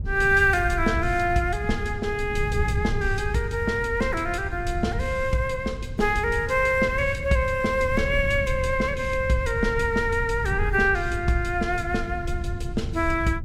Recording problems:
wind noise; below 100 Hz, SNR 7 dB

